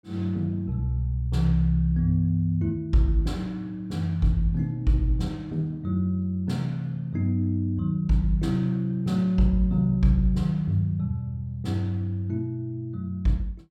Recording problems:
none

